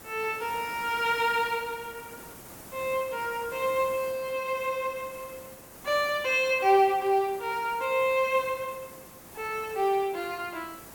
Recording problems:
hiss; slope -5 dB per octave, SNR 17 dB

